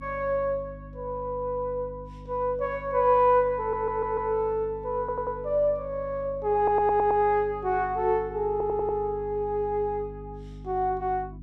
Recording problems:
hum; 50 Hz, harmonics up to 300 Hz, SNR 17 dB
audio stuttering; 4 times, first at 3.5 s

